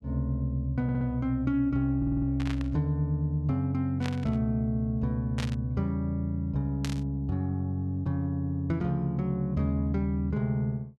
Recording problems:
stutter; at 1 s and at 2 s
burst of static; 4 times, first at 2.5 s; peak -4 dB vs average level

